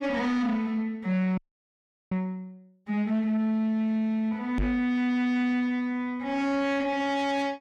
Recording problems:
distorted audio; soft clipping, signal-to-distortion ratio 10 dB
audio freezing; at 1.5 s for 0.5 s
knock on the microphone; at 4.5 s; peak +2 dB vs average level

